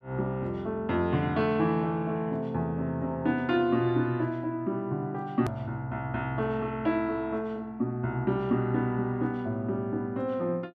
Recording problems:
hard cut with a click; at 5.5 s

